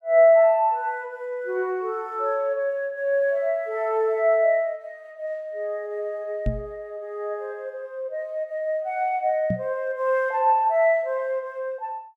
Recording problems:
knock on the microphone; at 6.5 s and at 9.5 s; peak +2 dB vs average level

